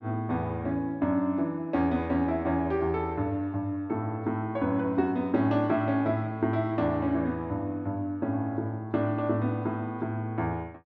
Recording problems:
none

